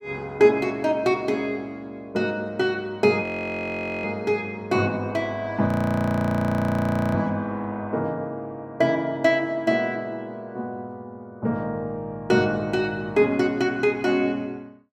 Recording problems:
audio freezing; at 3 s for 1 s and at 5.5 s for 1.5 s

